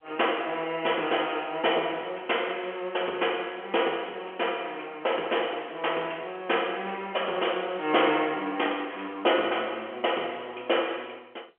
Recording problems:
telephone audio; 320 Hz to 3.2 kHz, G.711

